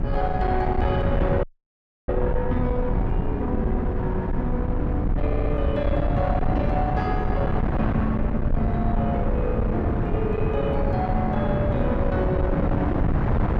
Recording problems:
distorted audio; soft clipping, signal-to-distortion ratio 11 dB
rumble; below 96 Hz, SNR 3 dB
wind on the microphone; below 310 Hz, SNR -1 dB
frozen audio; at 1.5 s for 0.5 s
stutter; at 5.5 s

